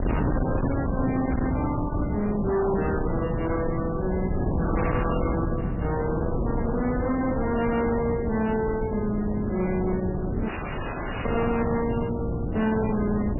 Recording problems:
codec artefacts; MP3, log-spectral distance 4 dB, nothing above 2.4 kHz
distortion; hard clipping, uneven, signal-to-distortion ratio 7 dB
hum; 60 Hz, harmonics up to 1 kHz, SNR 12 dB
wind on the microphone; below 330 Hz, SNR 2 dB
dropout; at 10 s for 1 s

